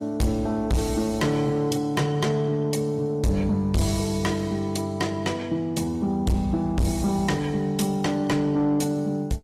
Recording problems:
lossy codec; AAC, log-spectral distance 2 dB
distorted audio; soft clipping, signal-to-distortion ratio 6 dB

